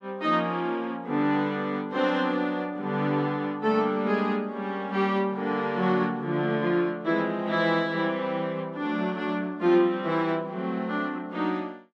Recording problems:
none

